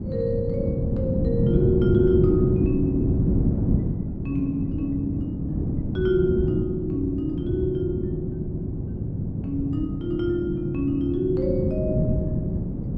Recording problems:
wind noise; below 240 Hz, SNR 0 dB

